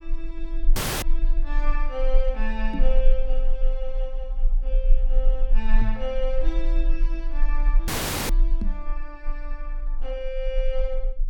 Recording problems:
rumble; below 32 Hz, strongest tone 20 Hz, SNR -6 dB
dropout; at 1 s and at 8 s
knock on the microphone; at 2.5 s, at 6 s and at 8.5 s; peak +7 dB vs average level

